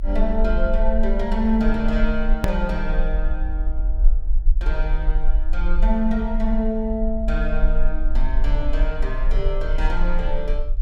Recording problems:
rumble; below 38 Hz, strongest tone 20 Hz, SNR -1 dB
hard cut with a click; at 2.5 s

